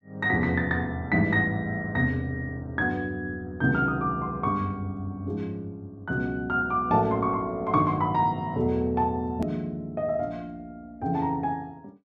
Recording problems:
hard cut with a click; at 9.5 s

